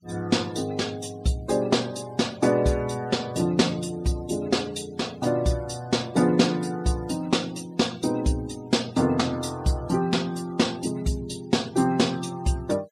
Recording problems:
noise reduction artefacts; signal-to-artefact ratio 23 dB

